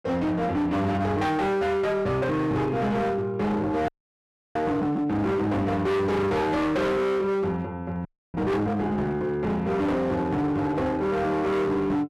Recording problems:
distorted audio; hard clipping, signal-to-distortion ratio 7 dB
audio freezing; at 4 s for 0.5 s and at 8 s

